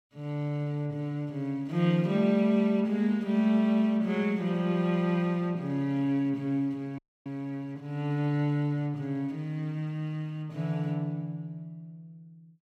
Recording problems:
dropout; at 7 s

